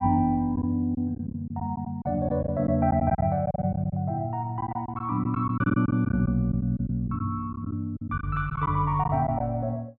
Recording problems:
treble cut off; nothing above 5.5 kHz
lost packets; 9% of the sound replaced, filled with silence

